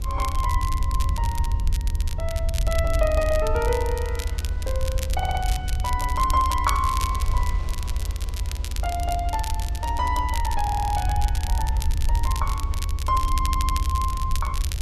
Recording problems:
hum; 50 Hz, harmonics up to 550 Hz, SNR 19 dB
low-frequency rumble; below 78 Hz, SNR -1 dB
wind on the microphone; below 1.6 kHz, SNR 20 dB
crackle; vinyl, SNR 9 dB
audio stuttering; at 5 s, at 11 s and at 13 s

